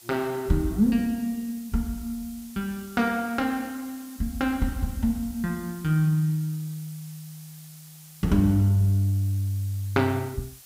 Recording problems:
hiss; SNR 20 dB

